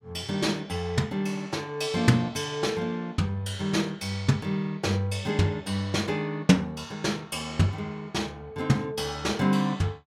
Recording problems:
none

